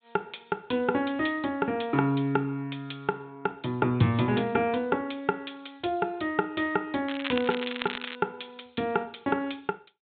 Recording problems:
treble cut off; nothing above 4 kHz
crackle; from 7 to 8 s; loose cable, SNR 7 dB

